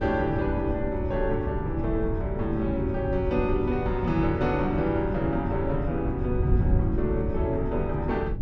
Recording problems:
wind noise; below 120 Hz, SNR 3 dB

